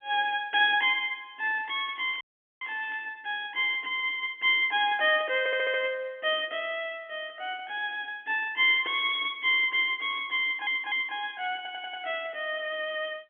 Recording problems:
phone line; 260 Hz to 3.4 kHz, G.711
crackling; from 1.5 to 3 s; loose cable, SNR 30 dB
audio cutting out; at 2 s
stutter; at 5.5 s, at 10 s and at 12 s

